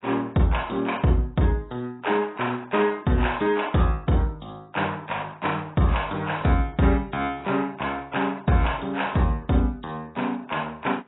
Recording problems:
lossy codec; AAC, log-spectral distance 3 dB, nothing above 3.8 kHz

